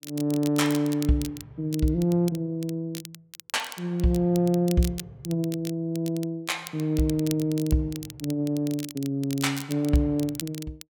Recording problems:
crackle; vinyl, SNR 15 dB

